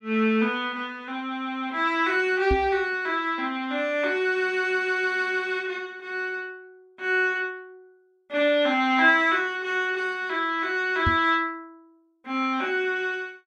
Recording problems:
knock on the microphone; at 2.5 s and at 11 s; peak +2 dB vs average level

